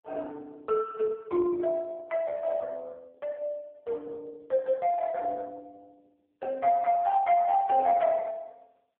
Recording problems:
telephone audio; 300 Hz to 4 kHz, AMR-NB

